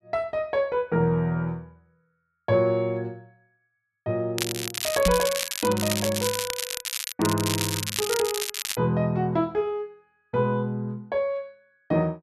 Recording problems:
crackle; from 4.5 to 7 s and from 7 to 9 s; loose cable, SNR 2 dB
knock on the microphone; at 5 s; peak +4 dB vs average level

